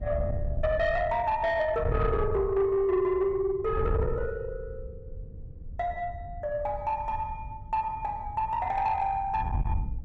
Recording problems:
distortion; soft clipping, signal-to-distortion ratio 11 dB
wind on the microphone; below 110 Hz, SNR 8 dB

